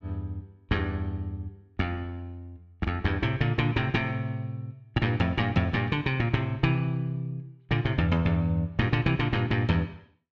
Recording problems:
none

